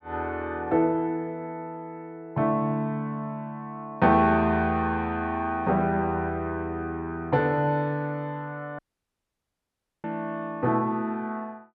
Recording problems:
dropout; at 9 s for 1.5 s

